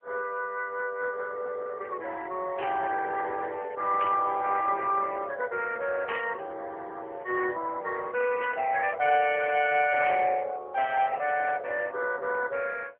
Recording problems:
telephone audio; 370 Hz to 2.9 kHz, AMR-NB
static burst; 5 times, first at 2.5 s; peak -4 dB vs average level

